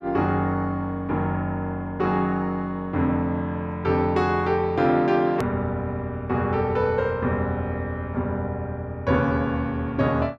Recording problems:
edit click; at 5.5 s

